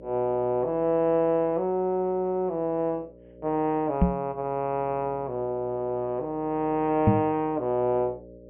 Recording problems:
low-pass filter; nothing above 3 kHz
hum; 60 Hz, harmonics up to 600 Hz, SNR 22 dB
microphone thump; at 4 s and at 7 s; peak +9 dB vs average level

